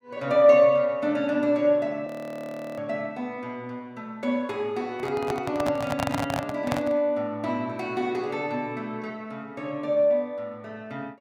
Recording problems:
frozen audio; at 2 s for 0.5 s
microphone handling noise; from 5 to 7 s; peak +2 dB vs average level

